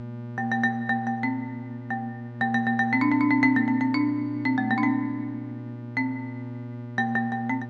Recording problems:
hum; 60 Hz, harmonics up to 1.4 kHz, SNR 12 dB

